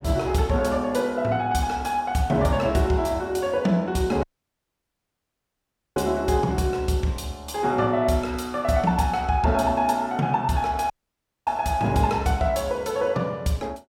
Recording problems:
dropout; at 4 s for 1.5 s and at 11 s for 0.5 s

